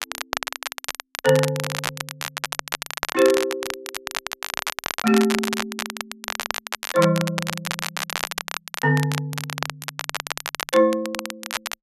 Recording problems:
crackling; vinyl, SNR 7 dB

